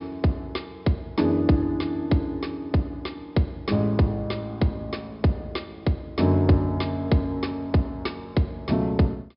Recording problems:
treble cut off; nothing above 5.5 kHz

